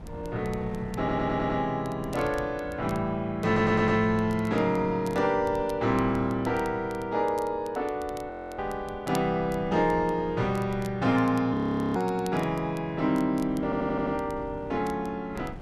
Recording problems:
wind on the microphone; below 230 Hz, SNR 17 dB
crackling; vinyl, SNR 25 dB
audio stuttering; at 1 s, at 3.5 s and at 14 s
frozen audio; at 8.5 s and at 12 s

